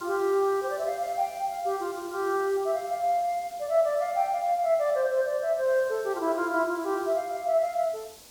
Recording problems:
hiss; SNR 21 dB

